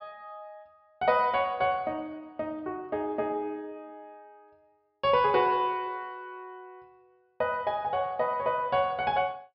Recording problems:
low-pass filter; nothing above 5.5 kHz

